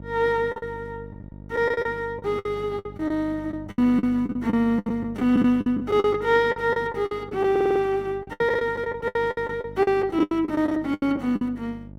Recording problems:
hum; 50 Hz, harmonics up to 900 Hz, SNR 18 dB
lost packets; 16% of the sound replaced, filled with the last packet
audio stuttering; at 7.5 s

